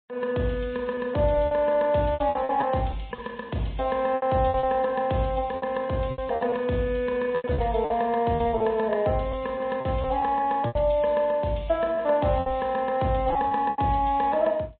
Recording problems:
low-pass filter; nothing above 3.9 kHz
lossy codec; MP3, log-spectral distance 3 dB
packet loss; 10% of the sound replaced, filled with repeated pitch periods

